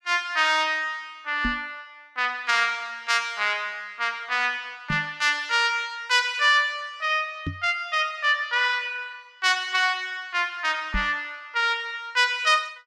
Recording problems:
knock on the microphone; 4 times, first at 1.5 s; peak -2 dB vs average level

